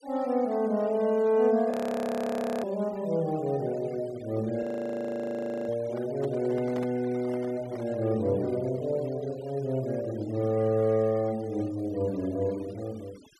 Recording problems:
noise reduction artefacts; signal-to-artefact ratio 23 dB
audio freezing; at 1.5 s for 1 s and at 4.5 s for 1 s
handling noise; from 5.5 to 8 s; peak -8 dB vs average level

